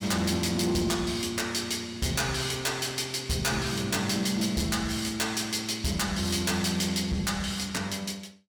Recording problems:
distorted audio; hard clipping, signal-to-distortion ratio 10 dB

